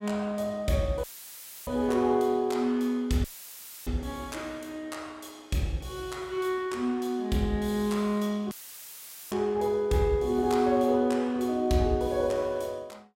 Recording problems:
dropout; at 1 s for 0.5 s, at 3 s for 0.5 s and at 8.5 s for 1 s; filled with static

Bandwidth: 16 kHz